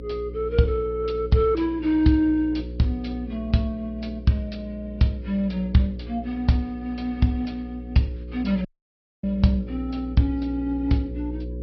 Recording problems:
treble cut off; nothing above 5.2 kHz
lossy compression; AAC, log-spectral distance 2 dB
electrical hum; 60 Hz, harmonics up to 540 Hz, SNR 12 dB
dropout; at 8.5 s for 0.5 s

